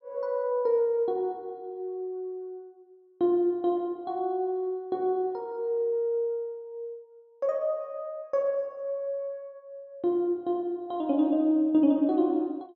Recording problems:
none

